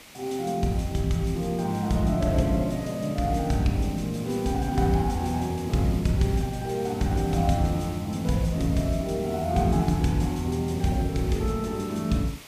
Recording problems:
background hiss; SNR 18 dB

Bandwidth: 15 kHz